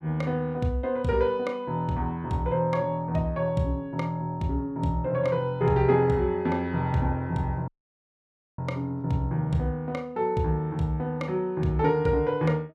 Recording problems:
audio cutting out; at 7.5 s for 1 s

